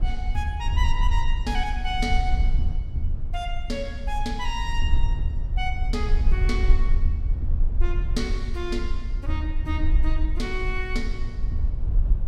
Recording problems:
low-frequency rumble; below 52 Hz, SNR -4 dB

